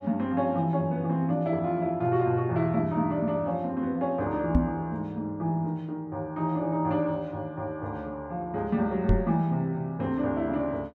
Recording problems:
knock on the microphone; at 4.5 s and at 9 s; peak +8 dB vs average level

